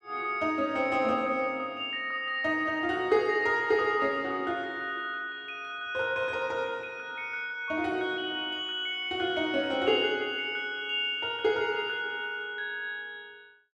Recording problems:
none

